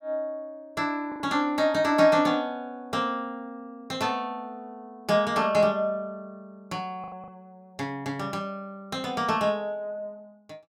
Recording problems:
lost packets; 2% of the sound replaced, filled with the last packet

